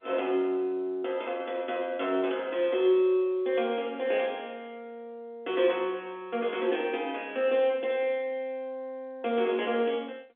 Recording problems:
phone line; 240 Hz to 3.5 kHz, G.711

